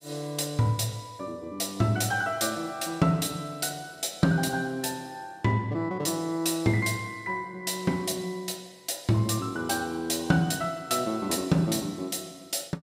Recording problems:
none

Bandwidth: 15.5 kHz